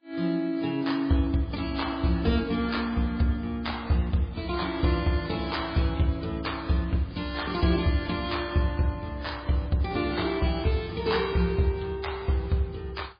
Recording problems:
lossy compression; AAC, then MP3, log-spectral distance 4 dB, nothing above 4.5 kHz

